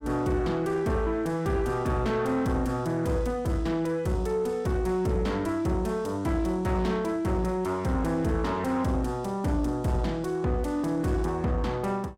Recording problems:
distortion; soft clipping, signal-to-distortion ratio 10 dB

